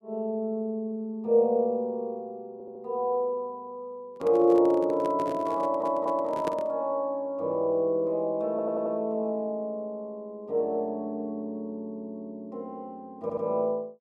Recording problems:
stutter; 4 times, first at 2.5 s
microphone handling noise; from 4 to 6.5 s; peak -1 dB vs average level

